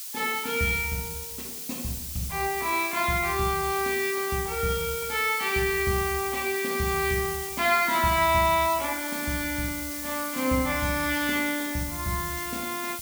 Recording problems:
background hiss; slope +7 dB per octave, SNR 7 dB

